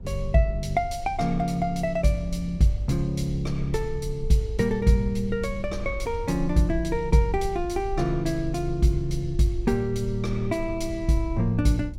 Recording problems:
low-frequency rumble; below 58 Hz, SNR 12 dB

